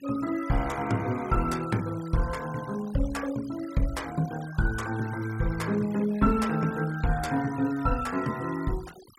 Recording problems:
noise reduction artefacts; signal-to-artefact ratio 18 dB

